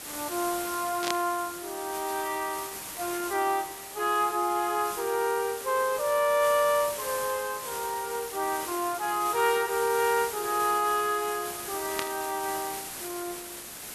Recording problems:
hiss; slope -1 dB per octave, SNR 8 dB
burst of static; at 1 s and at 12 s; peak +2 dB vs average level

